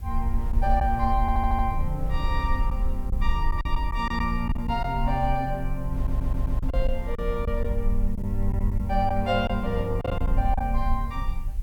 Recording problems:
background hiss; slope -1 dB per octave, SNR 28 dB
low-frequency rumble; below 56 Hz, SNR 1 dB
wind noise; below 170 Hz, SNR 15 dB
packet loss; 5% of the sound replaced, filled with silence
audio stuttering; at 1 s and at 6 s

